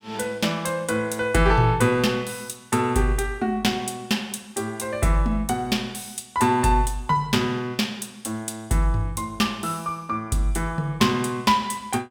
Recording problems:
none

